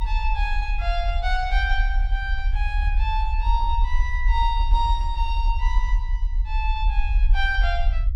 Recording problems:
low-frequency rumble; below 46 Hz, strongest tone 34 Hz, SNR -3 dB

